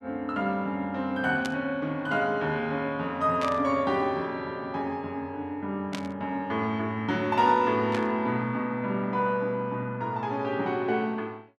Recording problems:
burst of static; 4 times, first at 1.5 s; peak -4 dB vs average level

